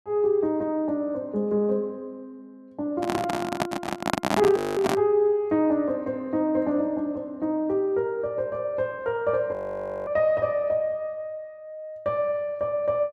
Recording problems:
microphone handling noise; from 3 to 5 s; peak +5 dB vs average level
frozen audio; at 4.5 s and at 9.5 s for 0.5 s

